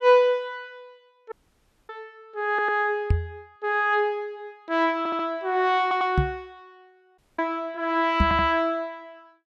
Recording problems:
dropout; at 1.5 s for 0.5 s and at 7 s
stutter; 4 times, first at 2.5 s
knock on the microphone; at 3 s, at 6 s and at 8 s; peak +6 dB vs average level

